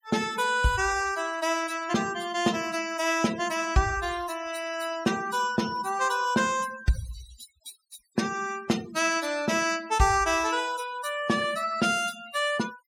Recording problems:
denoising artefacts; signal-to-artefact ratio 15 dB

